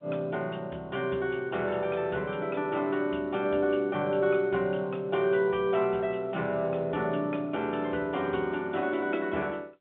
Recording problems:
telephone audio; 240 Hz to 4 kHz, G.711

